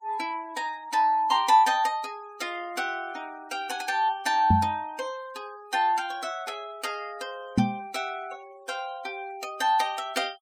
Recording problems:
denoising artefacts; signal-to-artefact ratio 22 dB
microphone bump; at 4.5 s and at 7.5 s; peak +8 dB vs average level

